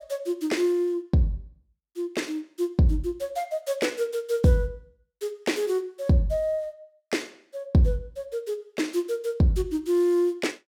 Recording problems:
none

